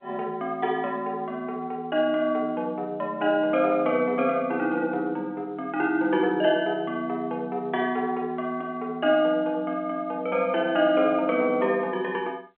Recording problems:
telephone audio; 260 Hz to 3.4 kHz, G.711

